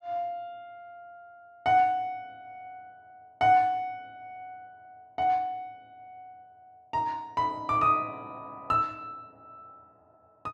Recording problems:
none

